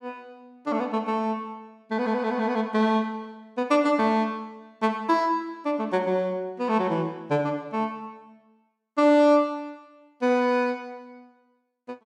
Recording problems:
none

